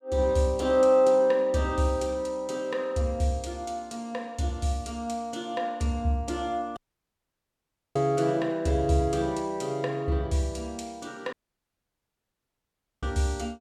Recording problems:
dropout; at 7 s for 1 s and at 11 s for 1.5 s

